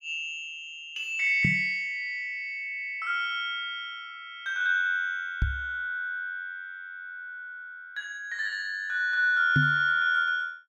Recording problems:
microphone bump; at 1.5 s, at 5.5 s and at 9.5 s; peak +5 dB vs average level

